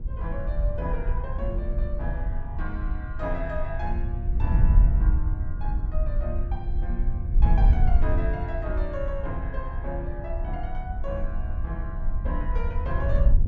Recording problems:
treble cut off; nothing above 8 kHz
hum; 60 Hz, harmonics up to 1.6 kHz, SNR 18 dB
wind on the microphone; below 66 Hz, SNR -8 dB

